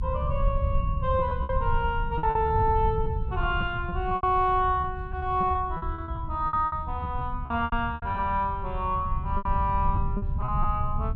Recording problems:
rumble; below 94 Hz, SNR 4 dB
lost packets; 12% of the sound replaced, filled with repeated pitch periods

